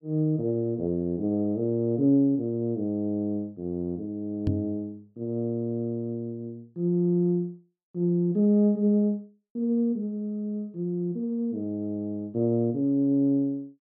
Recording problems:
microphone bump; at 4.5 s; peak +3 dB vs average level

